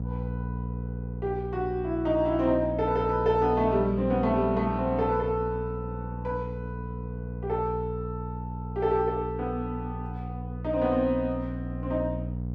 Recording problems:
hum; 60 Hz, harmonics up to 540 Hz, SNR 7 dB

